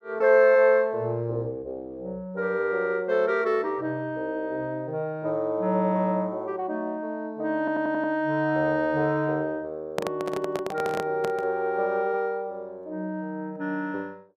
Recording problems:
stutter; at 7.5 s
handling noise; from 10 to 11 s; peak +1 dB vs average level

